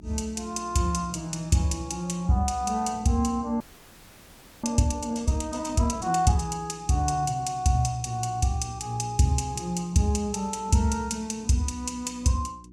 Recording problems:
electrical hum; 60 Hz, harmonics up to 360 Hz, SNR 22 dB
audio freezing; at 3.5 s for 1 s

